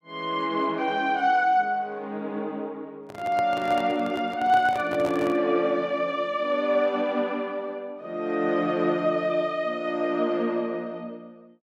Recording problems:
microphone handling noise; from 3 to 5.5 s; peak -5 dB vs average level

